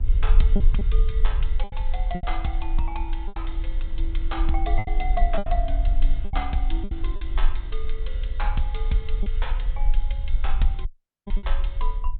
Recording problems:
treble missing; nothing above 4 kHz
low-frequency rumble; below 40 Hz, strongest tone 18 Hz, SNR -7 dB
wind noise; below 180 Hz, SNR 16 dB
lost packets; 6% of the sound replaced, filled with repeated pitch periods
dropout; at 11 s

